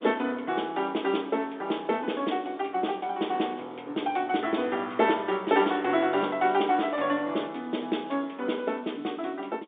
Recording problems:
phone line; 220 Hz to 3.7 kHz, G.711

